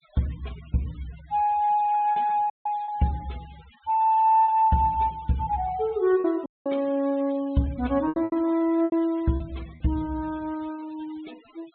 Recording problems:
low-pass filter; nothing above 4 kHz
noise reduction artefacts; signal-to-artefact ratio 26 dB
packet loss; 4% of the sound replaced, filled with repeated pitch periods
dropout; at 2.5 s and at 6.5 s

